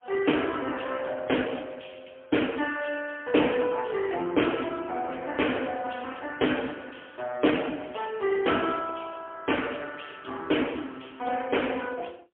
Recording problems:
telephone audio; 150 Hz to 3.3 kHz, AMR-NB, then MP3

